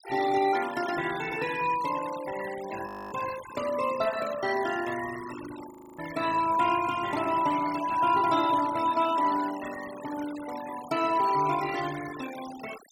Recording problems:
denoising artefacts; signal-to-artefact ratio 14 dB
frozen audio; at 3 s and at 5.5 s

